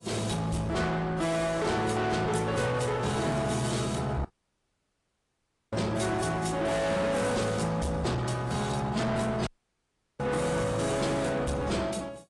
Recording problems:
codec artefacts; AAC, log-spectral distance 4 dB, nothing above 10.7 kHz
distorted audio; soft clipping, signal-to-distortion ratio 8 dB
dropout; at 4.5 s for 1.5 s and at 9.5 s for 0.5 s

